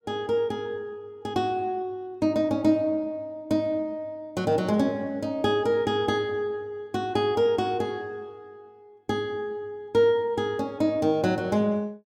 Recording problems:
none

